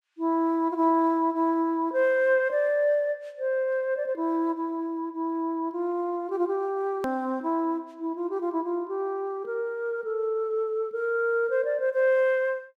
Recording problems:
hard cut with a click; at 7 s

